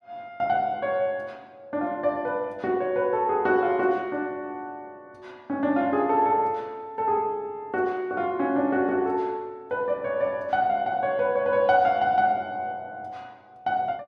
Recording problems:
none

